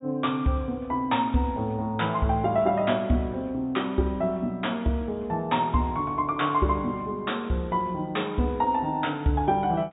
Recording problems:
treble cut off; nothing above 4 kHz

